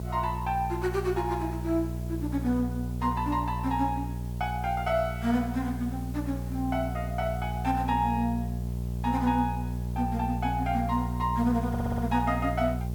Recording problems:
electrical hum; 60 Hz, harmonics up to 600 Hz, SNR 4 dB
background hiss; slope -1 dB per octave, SNR 22 dB
audio stuttering; at 12 s

